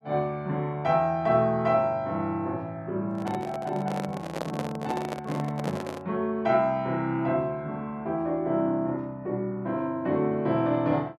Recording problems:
microphone handling noise; from 3 to 6 s; peak -1 dB vs average level

